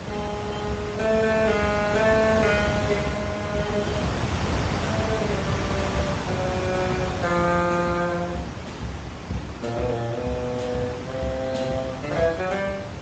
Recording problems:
lossy compression; Speex, log-spectral distance 4 dB, nothing above 7.3 kHz
hum; 60 Hz, harmonics up to 300 Hz, SNR 21 dB
wind noise; below 1.3 kHz, SNR 4 dB

